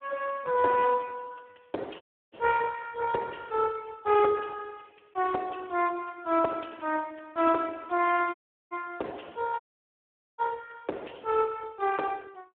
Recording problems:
telephone audio; 280 Hz to 2.3 kHz, Speex
dropout; at 2 s, at 8.5 s and at 9.5 s for 1 s

